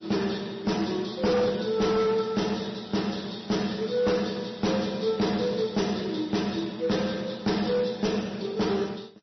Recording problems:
lossy compression; MP3, then MP3, log-spectral distance 6 dB, nothing above 5.8 kHz
distorted audio; hard clipping, signal-to-distortion ratio 11 dB

